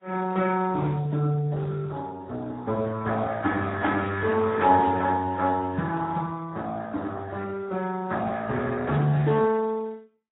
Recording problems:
lossy compression; Speex, then AAC, log-spectral distance 3 dB, nothing above 3.8 kHz

